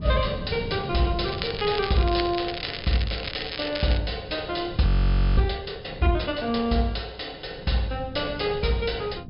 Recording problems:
low-pass filter; nothing above 5.5 kHz
wind noise; below 180 Hz, SNR 13 dB
crackling; from 1.5 to 4 s; loose cable, SNR 8 dB
audio freezing; at 5 s for 0.5 s

